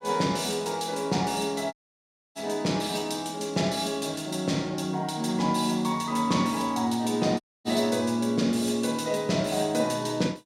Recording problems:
audio cutting out; at 1.5 s for 0.5 s and at 7.5 s

